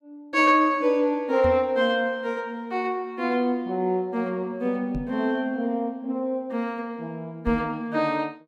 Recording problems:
knock on the microphone; at 1.5 s, at 5 s and at 7.5 s; peak -1 dB vs average level

